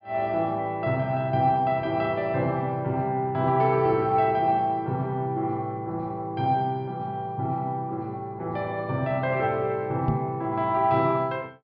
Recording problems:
treble missing; nothing above 5.5 kHz
knock on the microphone; at 10 s; peak +4 dB vs average level

